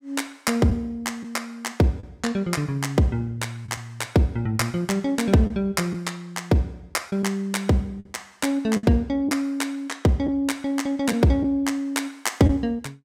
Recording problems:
lost packets; 3% of the sound replaced, filled with the last packet

